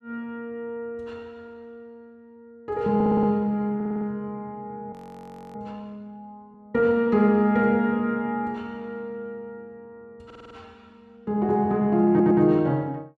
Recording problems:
audio stuttering; 4 times, first at 3 s
audio freezing; at 5 s for 0.5 s

